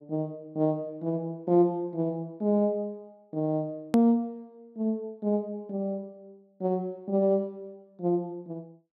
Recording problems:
edit click; at 4 s

